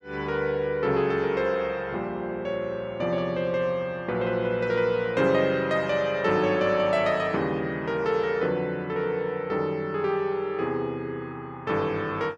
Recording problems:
none

